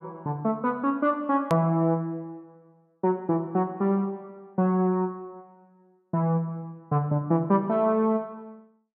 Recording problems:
click at an edit; at 1.5 s

